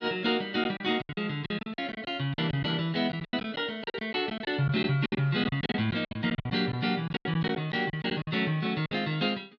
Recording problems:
lost packets; 15% of the sound replaced, filled with silence

